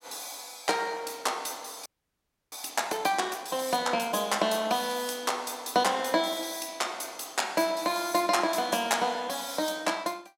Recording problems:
audio freezing; at 2 s for 0.5 s

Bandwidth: 16.5 kHz